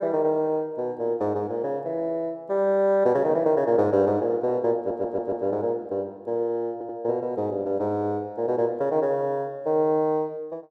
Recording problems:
stutter; at 5 s and at 6.5 s

